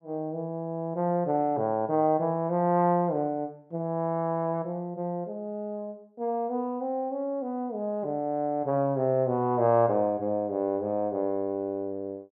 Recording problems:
none

